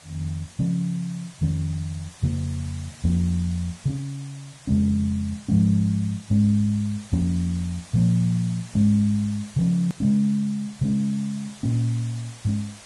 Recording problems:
lossy codec; Vorbis, log-spectral distance 4 dB, nothing above 13.1 kHz
background hiss; slope -1 dB per octave, SNR 21 dB
edit click; at 10 s

